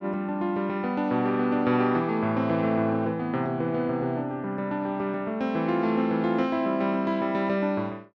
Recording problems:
none

